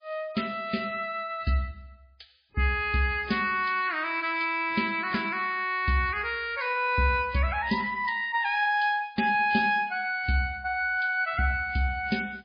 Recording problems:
codec artefacts; MP3, log-spectral distance 3 dB, nothing above 5 kHz

